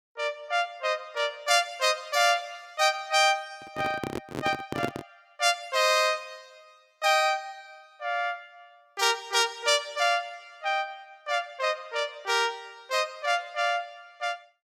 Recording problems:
microphone handling noise; from 3.5 to 5 s; peak +1 dB vs average level

